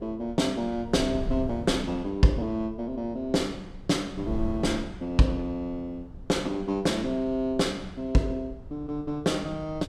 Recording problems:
wind noise; below 120 Hz, SNR 13 dB

